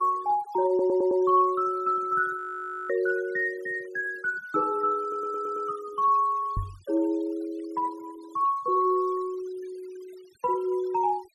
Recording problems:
noise reduction artefacts; signal-to-artefact ratio 24 dB
audio stuttering; at 0.5 s and at 5 s
frozen audio; at 2.5 s for 0.5 s
knock on the microphone; at 6.5 s; peak -1 dB vs average level

